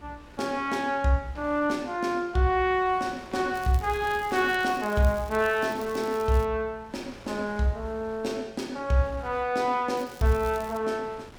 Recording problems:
wind noise; below 1.6 kHz, SNR 22 dB
crackle; from 3.5 to 6.5 s and at 10 s; loose cable, SNR 21 dB

